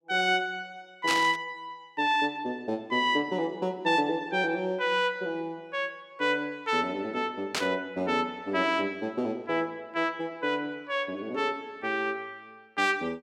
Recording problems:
burst of static; at 1 s and at 7.5 s; peak +4 dB vs average level

